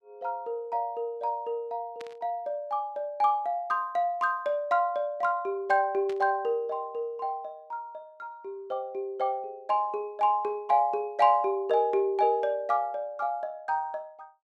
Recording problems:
static burst; at 2 s and at 6 s; peak -12 dB vs average level

